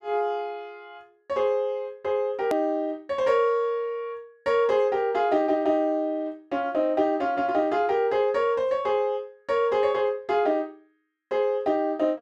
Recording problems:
edit click; at 2.5 s

